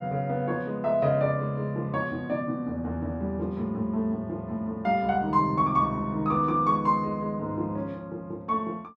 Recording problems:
none

